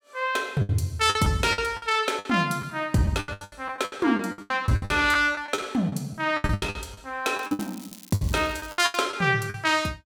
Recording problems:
packet loss; 19% of the sound replaced, filled with the last packet
crackling; from 7.5 to 9 s; loose cable, SNR 20 dB

